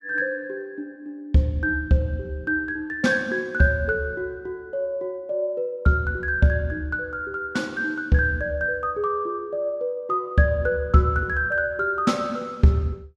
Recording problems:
none

